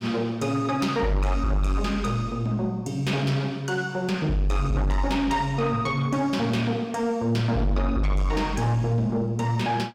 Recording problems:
distortion; soft clipping, signal-to-distortion ratio 10 dB

